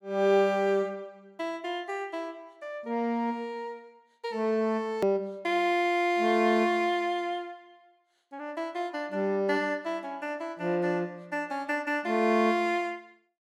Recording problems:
edit click; at 5 s

